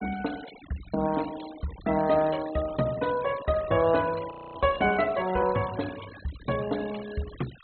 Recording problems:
treble missing; nothing above 4.2 kHz
denoising artefacts; signal-to-artefact ratio 17 dB
audio freezing; at 4.5 s

